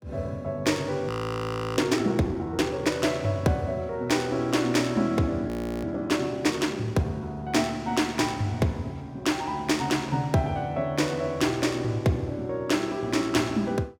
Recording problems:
audio freezing; at 1 s for 0.5 s and at 5.5 s

